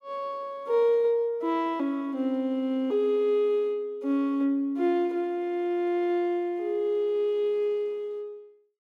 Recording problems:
none

